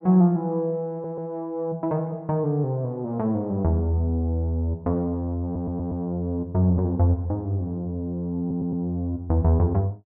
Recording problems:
stutter; at 1 s, at 5.5 s and at 8.5 s

